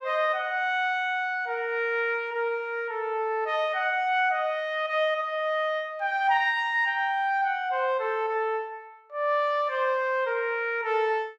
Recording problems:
none

